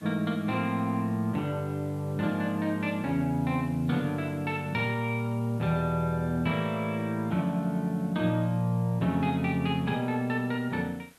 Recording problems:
hiss; slope -2 dB per octave, SNR 27 dB

